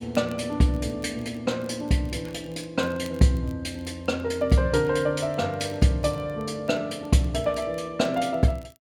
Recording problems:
crackling; vinyl, SNR 29 dB

